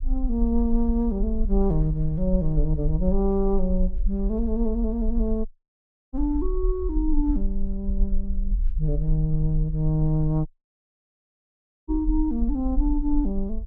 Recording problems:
rumble; below 46 Hz, SNR 4 dB
audio cutting out; at 5.5 s for 0.5 s and at 10 s for 1.5 s

